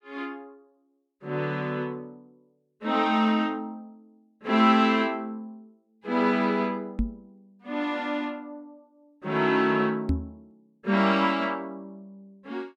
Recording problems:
knock on the microphone; at 7 s and at 10 s; peak +3 dB vs average level

